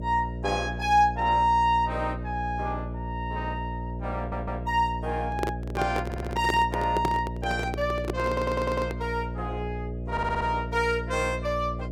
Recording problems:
hum; 60 Hz, harmonics up to 660 Hz, SNR 7 dB
audio stuttering; 4 times, first at 4 s
microphone handling noise; from 5 to 9 s; peak +3 dB vs average level

